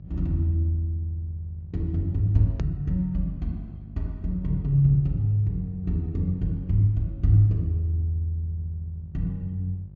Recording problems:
treble cut off; nothing above 7.1 kHz
hum; 50 Hz, harmonics up to 400 Hz, SNR 18 dB
hard cut with a click; at 2.5 s

